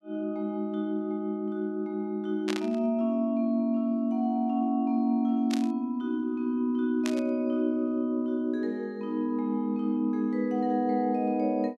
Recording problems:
static burst; at 2.5 s, at 5.5 s and at 7 s; peak -2 dB vs average level

